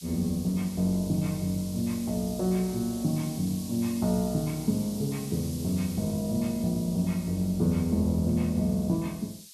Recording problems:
hiss; SNR 15 dB

